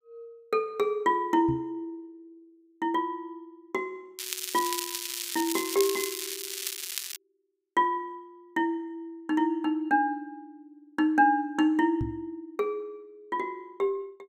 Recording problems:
microphone bump; at 1.5 s and at 12 s; peak 0 dB vs average level
crackle; from 4 to 7 s; loose cable, SNR 4 dB

